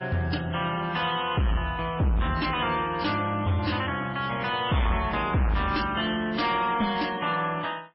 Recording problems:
lossy compression; MP3, then AAC, log-spectral distance 4 dB, nothing above 5.5 kHz
distortion; soft clipping, signal-to-distortion ratio 7 dB

